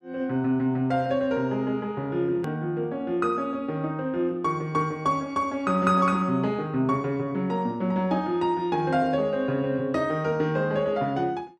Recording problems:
click at an edit; at 2.5 s

